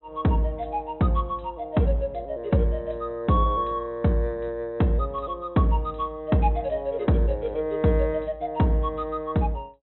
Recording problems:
low-pass filter; nothing above 4 kHz

